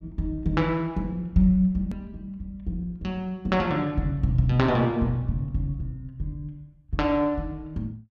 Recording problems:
click at an edit; at 2 s

